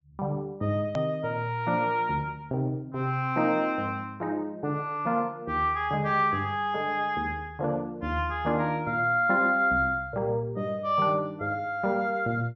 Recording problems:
treble missing; nothing above 7.5 kHz
edit click; at 1 s

